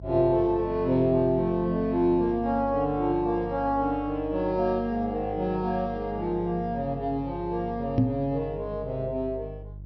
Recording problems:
treble cut off; nothing above 5.9 kHz
hum; 50 Hz, harmonics up to 350 Hz, SNR 15 dB
microphone thump; at 8 s; peak +8 dB vs average level

